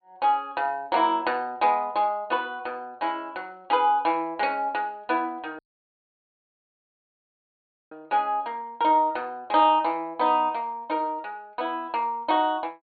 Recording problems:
low-pass filter; nothing above 4.5 kHz
audio cutting out; at 5.5 s for 2.5 s

